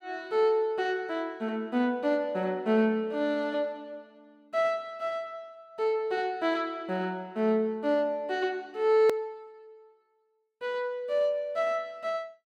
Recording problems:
edit click; at 9 s

